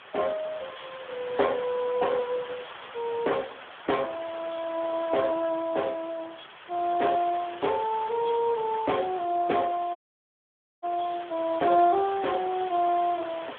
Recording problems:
phone line; 300 Hz to 3.4 kHz, Speex
background hiss; SNR 15 dB
dropout; at 10 s for 1 s

